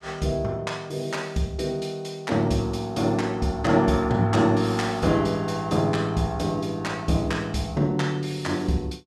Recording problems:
none

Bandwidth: 14 kHz